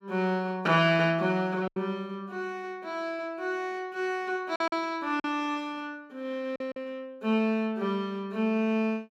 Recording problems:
lost packets; 3% of the sound replaced, filled with silence

